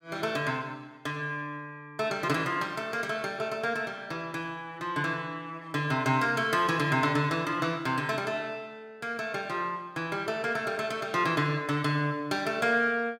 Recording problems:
none

